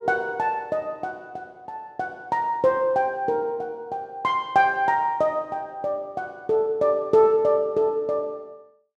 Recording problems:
none

